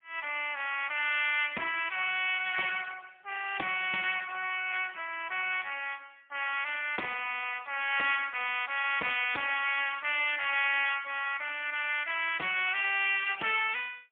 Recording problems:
phone line; 320 Hz to 3.3 kHz, AMR-NB, then MP3

